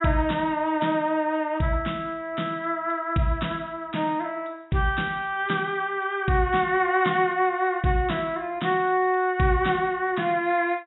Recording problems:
low-pass filter; nothing above 3.8 kHz

